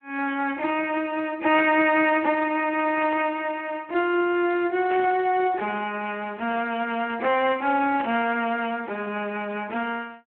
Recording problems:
telephone audio; 240 Hz to 3.3 kHz, Speex
burst of static; 4 times, first at 1.5 s; peak -5 dB vs average level

